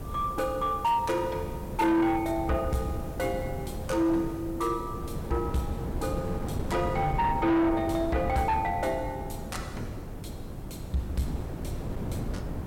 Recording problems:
distortion; soft clipping, signal-to-distortion ratio 11 dB
hiss; slope 0 dB per octave, SNR 27 dB
wind noise; below 310 Hz, SNR 7 dB

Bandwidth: 16.5 kHz